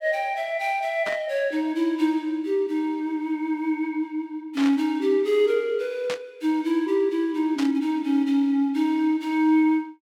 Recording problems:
burst of static; 4 times, first at 1 s; peak -4 dB vs average level

